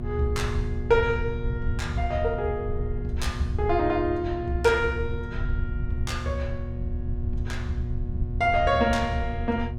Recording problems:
mains hum; 60 Hz, harmonics up to 1.1 kHz, SNR 10 dB
rumble; below 84 Hz, SNR 5 dB

